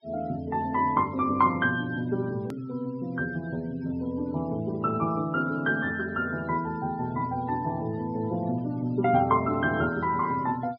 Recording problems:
treble missing; nothing above 5.4 kHz
denoising artefacts; signal-to-artefact ratio 24 dB
edit click; at 2.5 s

